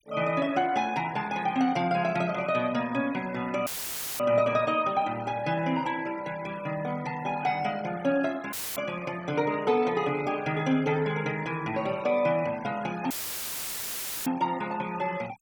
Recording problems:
denoising artefacts; signal-to-artefact ratio 19 dB
dropout; at 3.5 s for 0.5 s, at 8.5 s and at 13 s for 1 s; filled with static

